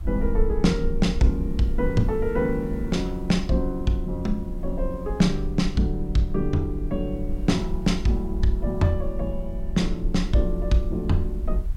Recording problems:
hiss; slope -5 dB per octave, SNR 30 dB
rumble; below 50 Hz, strongest tone 22 Hz, SNR 7 dB

